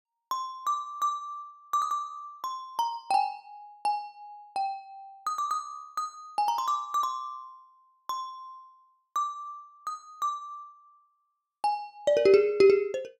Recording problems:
none

